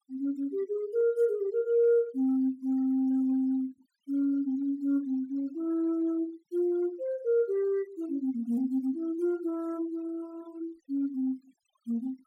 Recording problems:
denoising artefacts; signal-to-artefact ratio 27 dB

